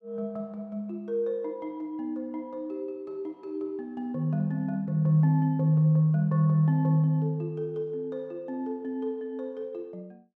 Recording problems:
none

